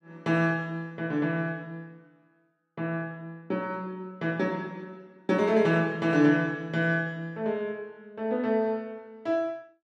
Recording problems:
none

